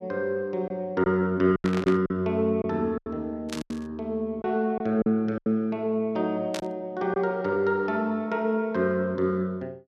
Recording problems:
packet loss; 6% of the sound replaced, filled with silence
burst of static; at 1.5 s, at 3.5 s and at 6.5 s; peak -4 dB vs average level

